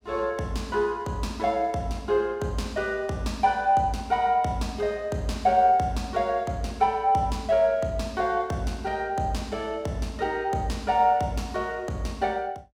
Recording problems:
none

